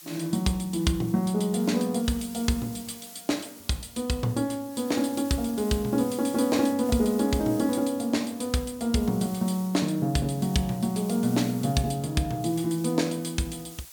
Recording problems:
hiss; slope +3 dB per octave, SNR 17 dB

